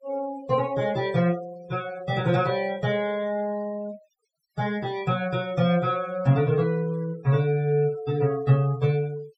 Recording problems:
noise reduction artefacts; signal-to-artefact ratio 22 dB

